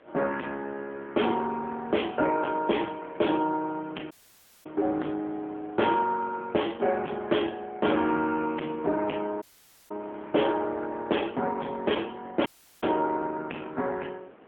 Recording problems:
phone line; 240 Hz to 3.4 kHz, AMR-NB
distorted audio; soft clipping, signal-to-distortion ratio 12 dB
wind noise; below 1.1 kHz, SNR 22 dB
dropout; at 4 s for 0.5 s, at 9.5 s and at 12 s

